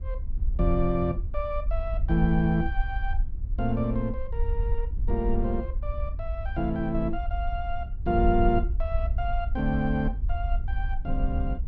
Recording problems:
wind noise; below 58 Hz, SNR 2 dB

